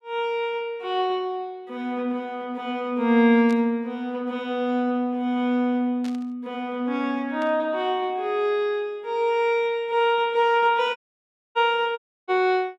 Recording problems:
static burst; at 3.5 s, at 6 s and at 7.5 s; peak -13 dB vs average level
dropout; at 11 s for 0.5 s and at 12 s

